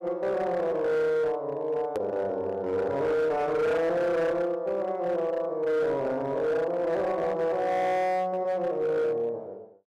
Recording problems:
distorted audio; hard clipping, signal-to-distortion ratio 12 dB
click at an edit; at 2 s

